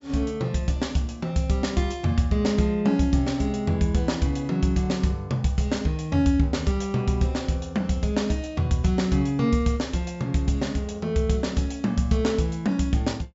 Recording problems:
treble missing; nothing above 8 kHz

